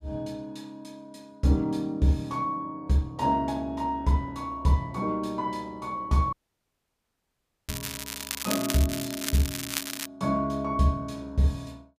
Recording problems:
audio cutting out; at 6.5 s for 1.5 s
crackling; from 7.5 to 10 s; loose cable, SNR 5 dB

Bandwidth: 15 kHz